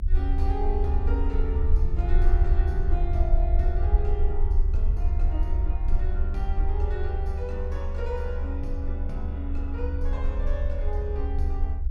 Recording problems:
low-frequency rumble; below 70 Hz, strongest tone 26 Hz, SNR -8 dB

